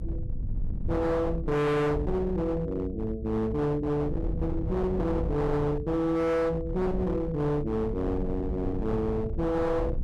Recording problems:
distortion; hard clipping, signal-to-distortion ratio 7 dB
low-frequency rumble; below 130 Hz, SNR 7 dB

